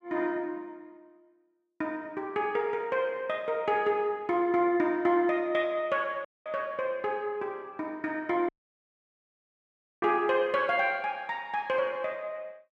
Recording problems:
dropout; at 6.5 s and at 8.5 s for 1.5 s

